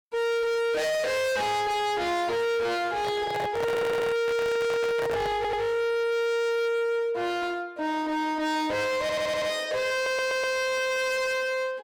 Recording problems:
distortion; hard clipping, signal-to-distortion ratio 6 dB
microphone handling noise; from 3 to 5.5 s; peak 0 dB vs average level
audio stuttering; 4 times, first at 3.5 s

